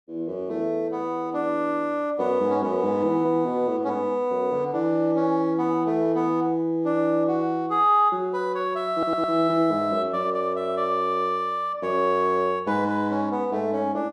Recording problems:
audio stuttering; at 9 s

